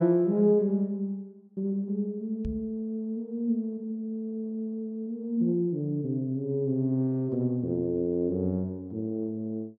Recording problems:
knock on the microphone; at 2.5 s; peak -3 dB vs average level

